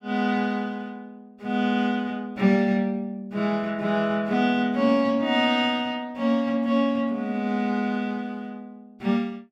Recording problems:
none

